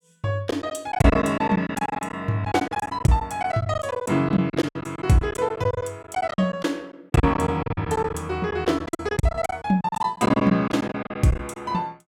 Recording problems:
packet loss; 16% of the sound replaced, filled with silence

